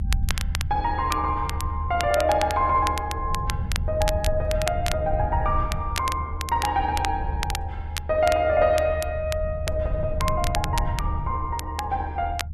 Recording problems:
rumble; below 88 Hz, SNR 5 dB
crackling; vinyl, SNR 9 dB

